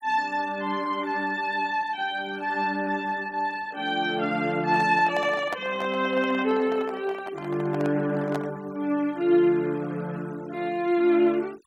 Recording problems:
denoising artefacts; signal-to-artefact ratio 24 dB
handling noise; from 4.5 to 8.5 s; peak -3 dB vs average level

